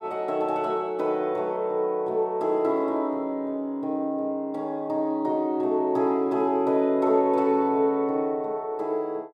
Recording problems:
none

